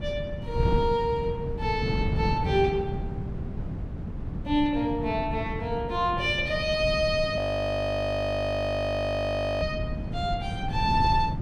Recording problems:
wind noise; below 190 Hz, SNR 5 dB
frozen audio; at 7.5 s for 2 s

